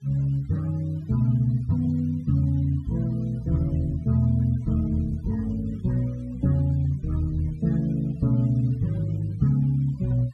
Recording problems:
denoising artefacts; signal-to-artefact ratio 27 dB

